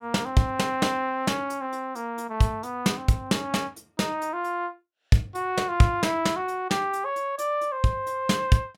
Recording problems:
none

